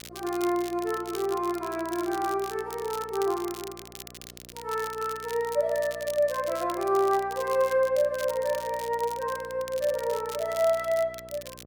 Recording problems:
electrical hum; 60 Hz, harmonics up to 1.3 kHz, SNR 23 dB
crackle; vinyl, SNR 15 dB

